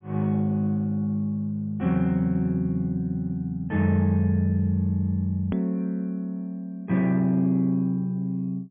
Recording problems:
edit click; at 5.5 s

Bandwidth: 3.5 kHz